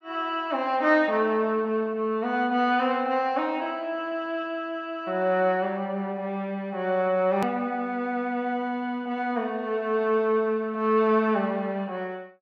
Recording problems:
click at an edit; at 7.5 s

